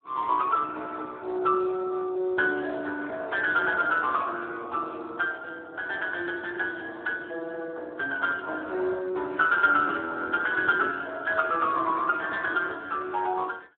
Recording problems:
phone line; 260 Hz to 3.8 kHz, Speex

